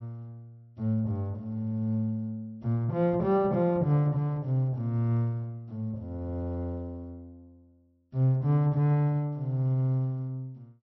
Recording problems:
treble missing; nothing above 5.7 kHz

